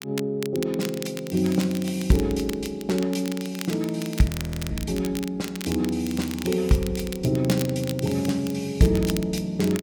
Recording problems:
crackle; vinyl, SNR 13 dB
audio freezing; at 4.5 s

